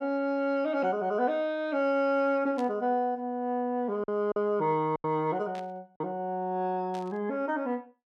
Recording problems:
packet loss; 3% of the sound replaced, filled with silence
burst of static; at 2.5 s, at 5.5 s and at 7 s; peak -13 dB vs average level

